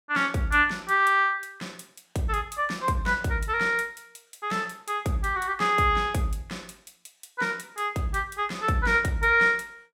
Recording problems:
none

